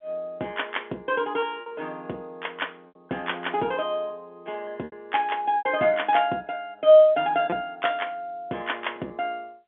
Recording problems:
telephone audio; 220 Hz to 3.5 kHz, G.711
lost packets; 4% of the sound replaced, filled with repeated pitch periods

